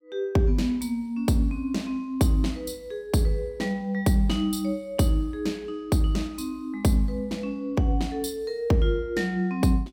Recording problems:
none

